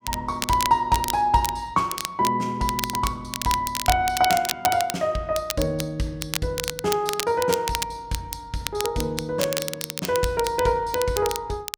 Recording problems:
crackle; vinyl, SNR 6 dB

